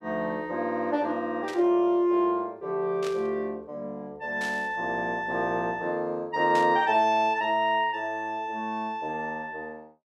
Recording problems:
burst of static; 4 times, first at 1.5 s; peak -7 dB vs average level

